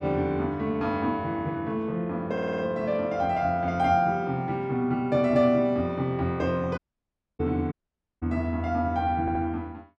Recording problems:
stutter; at 2.5 s and at 9 s
dropout; at 7 s for 0.5 s and at 7.5 s

